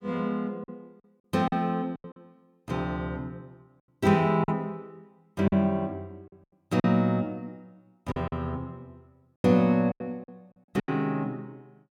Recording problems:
packet loss; 8% of the sound replaced, filled with silence

